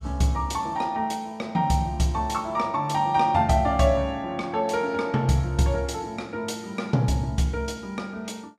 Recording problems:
none

